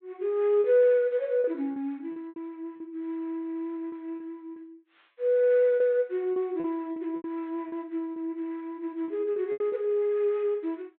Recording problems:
treble missing; nothing above 4 kHz
packet loss; 9% of the sound replaced, filled with repeated pitch periods

